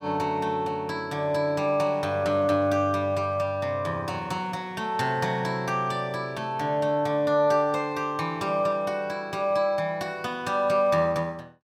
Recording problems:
none

